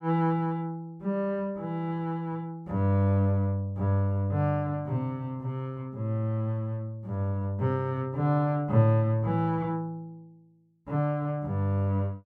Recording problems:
none

